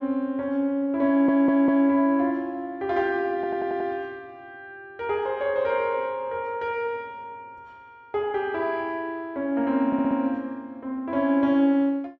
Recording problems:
stutter; at 1 s, at 3.5 s and at 10 s

